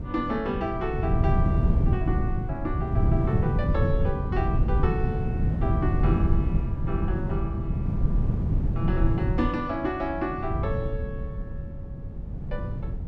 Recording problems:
wind noise; below 150 Hz, SNR -4 dB

